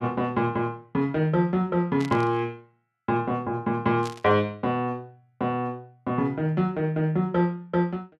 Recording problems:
burst of static; at 2 s and at 4 s; peak -9 dB vs average level

